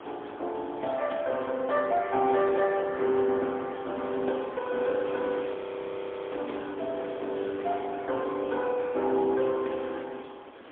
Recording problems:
phone line; 240 Hz to 3.4 kHz, AMR-NB, then MP3
wind noise; below 1.5 kHz, SNR 15 dB
audio freezing; at 5.5 s for 1 s

